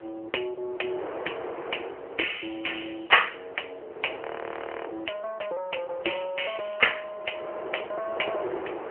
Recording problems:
telephone audio; 300 Hz to 3.1 kHz, AMR-NB
wind noise; below 940 Hz, SNR 11 dB
frozen audio; at 4 s for 0.5 s

